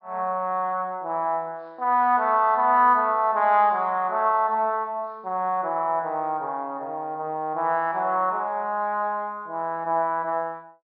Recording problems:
low-pass filter; nothing above 5.5 kHz

